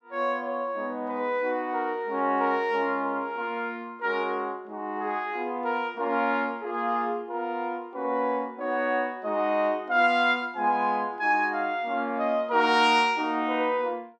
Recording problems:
none

